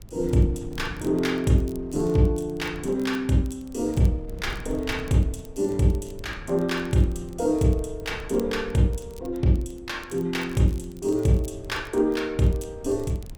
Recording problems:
wind on the microphone; below 120 Hz, SNR 17 dB
crackling; vinyl, SNR 28 dB

